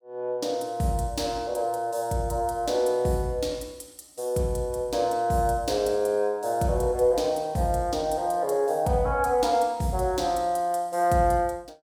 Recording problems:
none

